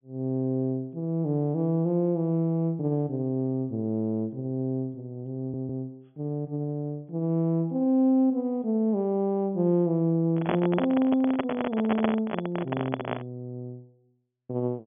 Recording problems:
treble cut off; nothing above 3.4 kHz
stutter; at 5.5 s
handling noise; from 10 to 13 s; peak +4 dB vs average level

